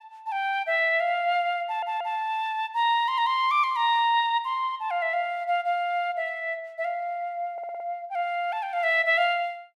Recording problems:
stutter; at 1.5 s and at 7.5 s

